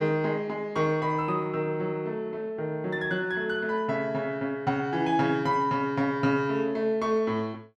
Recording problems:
none

